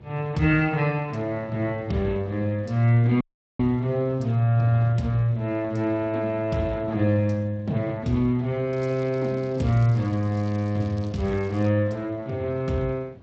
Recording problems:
lossy codec; Speex, log-spectral distance 3 dB, nothing above 16 kHz
wind noise; below 300 Hz, SNR 21 dB
dropout; at 3 s
crackle; from 8.5 to 12 s; loose cable, SNR 27 dB

